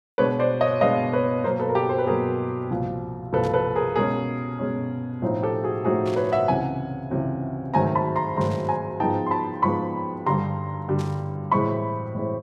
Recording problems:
burst of static; 4 times, first at 3.5 s; peak -13 dB vs average level

